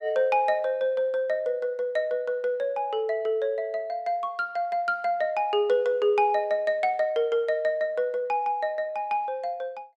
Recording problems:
none

